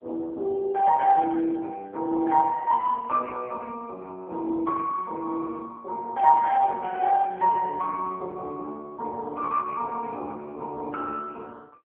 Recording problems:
phone line; 260 Hz to 2.2 kHz, AMR-NB

